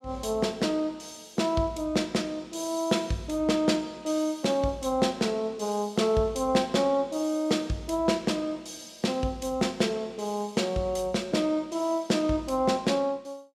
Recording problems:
none

